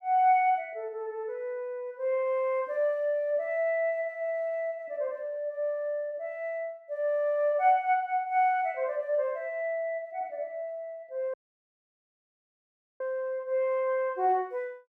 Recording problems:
dropout; at 11 s for 1.5 s

